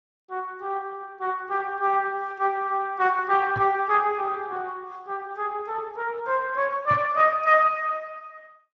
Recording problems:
lossy codec; Speex, log-spectral distance 3 dB
knock on the microphone; at 3.5 s and at 7 s; peak -7 dB vs average level

